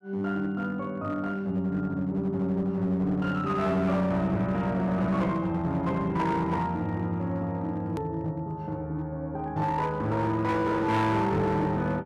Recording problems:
distorted audio; hard clipping, uneven, signal-to-distortion ratio 10 dB
click at an edit; at 8 s

